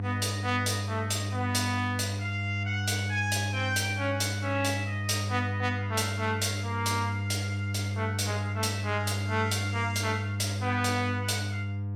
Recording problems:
hum; 50 Hz, harmonics up to 500 Hz, SNR 2 dB

